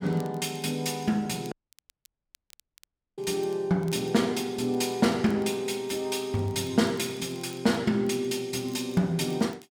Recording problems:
crackling; vinyl, SNR 28 dB
dropout; at 1.5 s for 1.5 s

